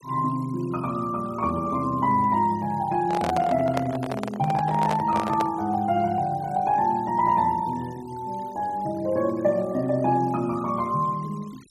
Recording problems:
noise reduction artefacts; signal-to-artefact ratio 24 dB
microphone handling noise; from 3 to 5.5 s; peak 0 dB vs average level

